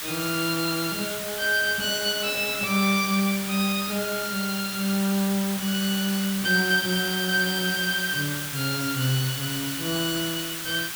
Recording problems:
hiss; SNR 5 dB

